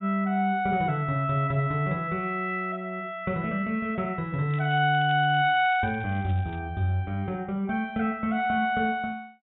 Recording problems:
treble cut off; nothing above 3.7 kHz
crackling; from 4.5 to 6.5 s; loose cable, SNR 27 dB

